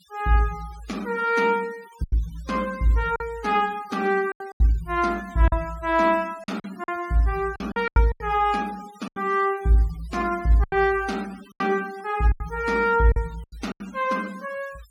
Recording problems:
noise reduction artefacts; signal-to-artefact ratio 22 dB
lost packets; 8% of the sound replaced, filled with silence

